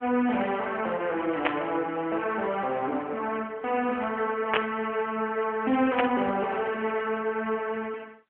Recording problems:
telephone audio; 280 Hz to 3.1 kHz, AMR-NB
static burst; at 1.5 s, at 4.5 s and at 6 s; peak +7 dB vs average level

